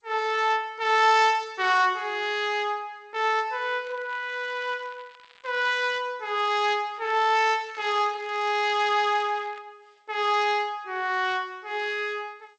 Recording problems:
lossy compression; G.722, then G.722, log-spectral distance 3 dB
crackle; from 4 to 5.5 s and from 7 to 9.5 s; loose cable, SNR 28 dB

